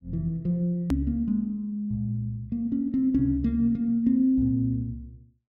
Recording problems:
click at an edit; at 1 s

